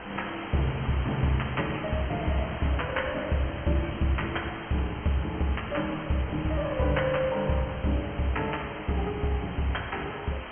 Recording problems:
treble missing; nothing above 3.2 kHz
background hiss; SNR 10 dB
wind on the microphone; below 330 Hz, SNR 21 dB

